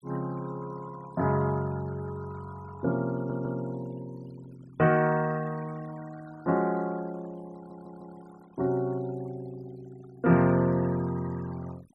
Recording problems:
denoising artefacts; signal-to-artefact ratio 22 dB
stutter; at 3 s and at 7.5 s

